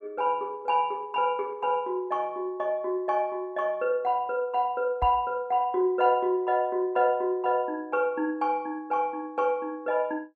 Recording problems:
knock on the microphone; at 5 s; peak -2 dB vs average level

